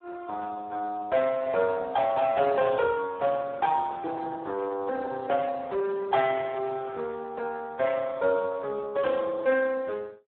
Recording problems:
phone line; 340 Hz to 2.6 kHz, Speex

